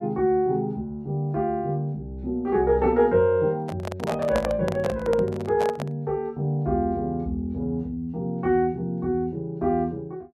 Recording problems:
handling noise; from 3.5 to 6 s; peak +1 dB vs average level

